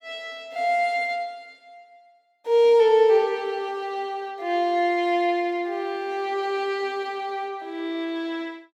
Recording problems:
none

